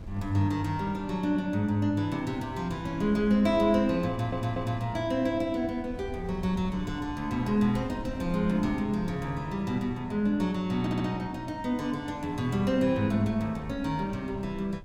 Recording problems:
wind noise; below 120 Hz, SNR 17 dB
audio stuttering; at 4 s and at 11 s

